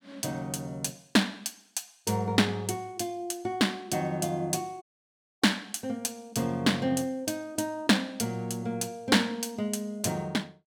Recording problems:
audio cutting out; at 5 s for 0.5 s

